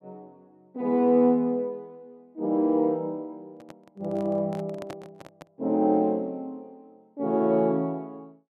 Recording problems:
microphone handling noise; from 3.5 to 5.5 s; peak -10 dB vs average level

